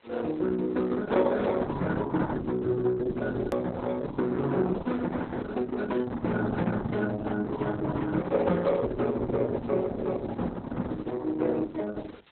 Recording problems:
lossy compression; Opus, then Opus, log-spectral distance 5 dB, nothing above 13.1 kHz
hiss; SNR 29 dB
edit click; at 3.5 s

